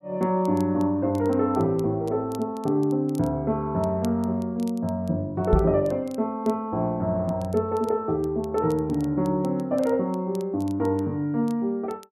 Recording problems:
crackle; vinyl, SNR 27 dB
microphone bump; at 5.5 s; peak +8 dB vs average level

